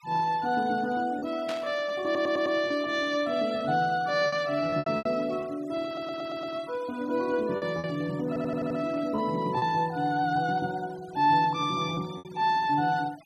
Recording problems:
noise reduction artefacts; signal-to-artefact ratio 22 dB
lost packets; 5% of the sound replaced, filled with repeated pitch periods
static burst; at 1.5 s; peak -6 dB vs average level
audio stuttering; at 2 s, at 6 s and at 8.5 s

